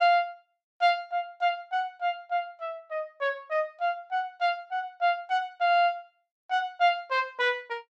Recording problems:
none

